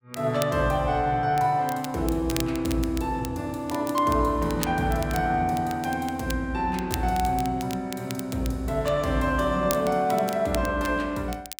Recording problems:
crackle; vinyl, SNR 14 dB

